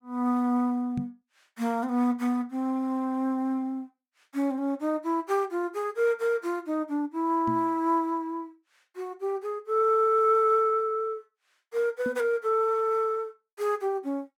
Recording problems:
microphone bump; at 1 s, at 7.5 s and at 12 s; peak -2 dB vs average level

